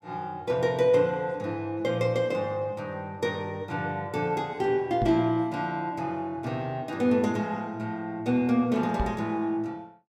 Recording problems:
microphone thump; at 5 s and at 9 s; peak +1 dB vs average level

